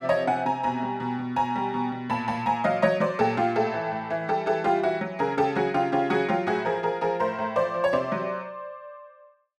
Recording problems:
none

